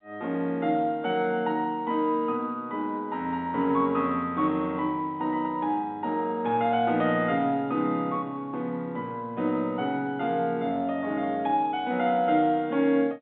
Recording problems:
telephone audio; 130 Hz to 3.8 kHz, G.711

